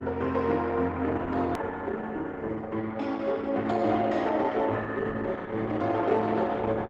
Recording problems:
codec artefacts; Opus, log-spectral distance 3 dB, nothing above 13.1 kHz
hard cut with a click; at 1.5 s

